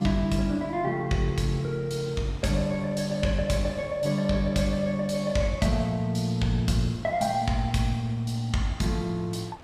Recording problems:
wind on the microphone; below 1.1 kHz, SNR 25 dB

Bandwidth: 14.5 kHz